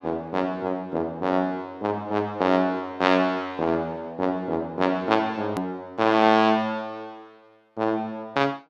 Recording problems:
click at an edit; at 5.5 s

